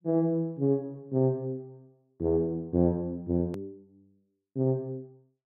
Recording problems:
edit click; at 3.5 s

